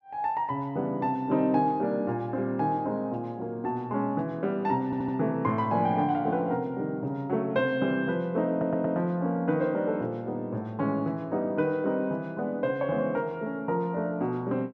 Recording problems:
stutter; at 5 s and at 8.5 s

